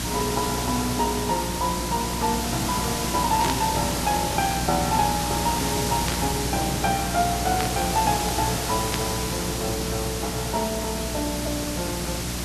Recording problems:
hum; 60 Hz, harmonics up to 360 Hz, SNR 7 dB
background hiss; slope -2 dB per octave, SNR 1 dB
burst of static; 4 times, first at 3.5 s; peak +2 dB vs average level

